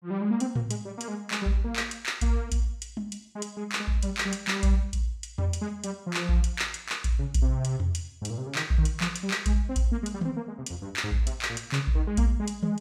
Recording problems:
none

